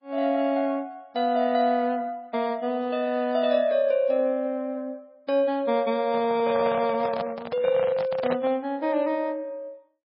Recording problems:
codec artefacts; MP3, log-spectral distance 2 dB, nothing above 4.6 kHz
microphone handling noise; from 6 to 8.5 s; peak -2 dB vs average level

